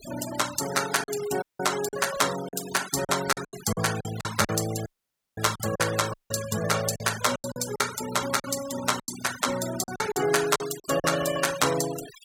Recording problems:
denoising artefacts; signal-to-artefact ratio 10 dB
lost packets; 10% of the sound replaced, filled with silence
dropout; at 1.5 s, at 5 s for 0.5 s and at 6 s

